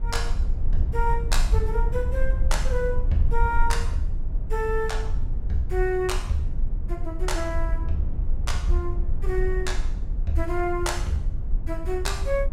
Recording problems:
rumble; below 52 Hz, strongest tone 20 Hz, SNR -1 dB

